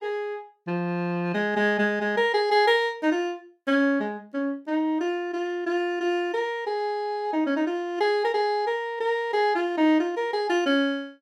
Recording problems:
none

